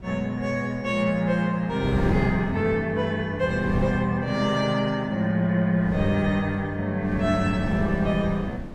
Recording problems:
wind on the microphone; below 310 Hz, SNR 8 dB

